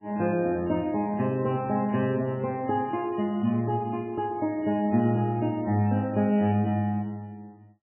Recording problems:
codec artefacts; MP3, log-spectral distance 2 dB, nothing above 2.6 kHz

